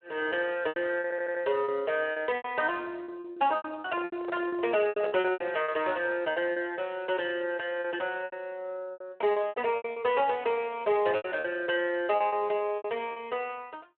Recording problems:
telephone audio; 320 Hz to 3.4 kHz, Speex
lost packets; 13% of the sound replaced, filled with repeated pitch periods
audio stuttering; at 1 s
microphone handling noise; from 4 to 5.5 s; peak 0 dB vs average level

